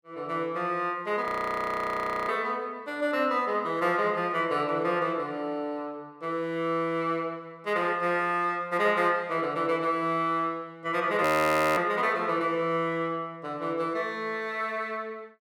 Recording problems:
audio freezing; at 1.5 s for 1 s and at 11 s for 0.5 s

